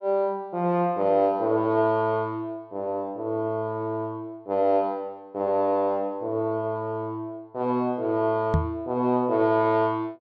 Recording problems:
knock on the microphone; at 8.5 s; peak +5 dB vs average level

